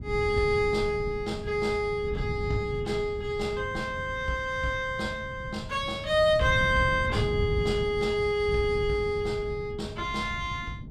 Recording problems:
wind noise; below 160 Hz, SNR 9 dB

